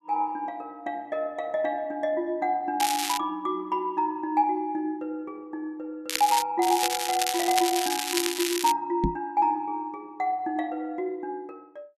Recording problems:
crackling; at 3 s, at 6 s and from 6.5 to 8.5 s; loose cable, SNR 2 dB
knock on the microphone; at 9 s; peak +5 dB vs average level

